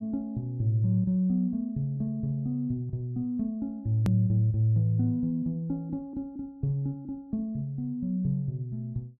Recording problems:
hard cut with a click; at 4 s

